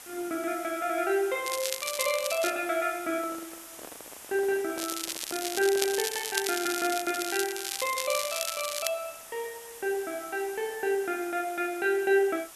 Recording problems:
background hiss; SNR 14 dB
crackling; from 1.5 to 2.5 s and from 5 to 9 s; loose cable, SNR 3 dB
handling noise; from 3 to 6.5 s; peak -9 dB vs average level

